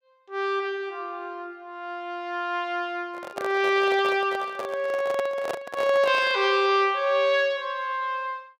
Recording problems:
handling noise; from 3 to 6.5 s; peak -2 dB vs average level

